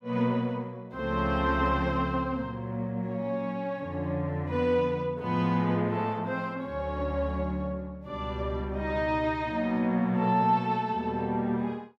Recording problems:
none

